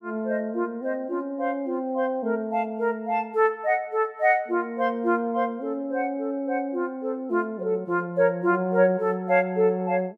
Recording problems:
none

